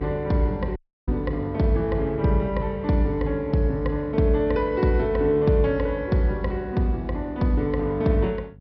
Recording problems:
treble missing; nothing above 5.6 kHz
mains hum; 50 Hz, harmonics up to 500 Hz, SNR 21 dB
dropout; at 1 s

